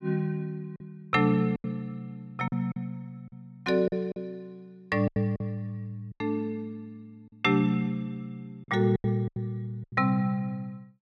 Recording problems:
packet loss; 8% of the sound replaced, filled with silence

